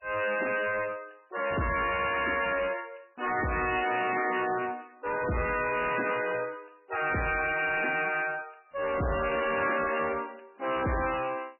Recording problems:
codec artefacts; MP3, log-spectral distance 10 dB, nothing above 2.6 kHz
distortion; soft clipping, signal-to-distortion ratio 5 dB

